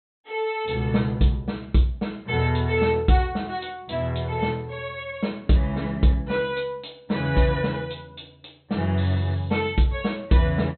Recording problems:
low-pass filter; nothing above 4.1 kHz

